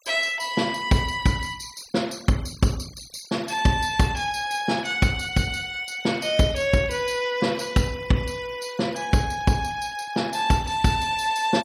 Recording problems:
noise reduction artefacts; signal-to-artefact ratio 20 dB

